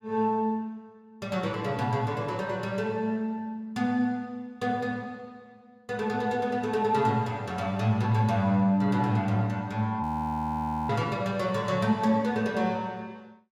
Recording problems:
frozen audio; at 10 s for 1 s

